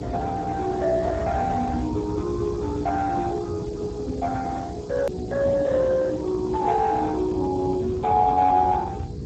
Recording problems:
lossy codec; Speex, log-spectral distance 4 dB
hum; 60 Hz, harmonics up to 480 Hz, SNR 11 dB
background hiss; SNR 27 dB
rumble; below 160 Hz, SNR 12 dB
hard cut with a click; at 5 s

